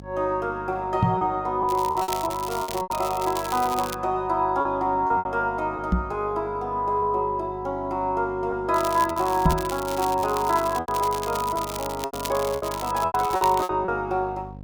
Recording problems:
hum; 50 Hz, harmonics up to 800 Hz, SNR 17 dB
lost packets; 7% of the sound replaced, filled with repeated pitch periods
microphone bump; at 1 s, at 6 s and at 9.5 s; peak +8 dB vs average level
crackle; from 1.5 to 4 s and from 8.5 to 14 s; loose cable, SNR 12 dB

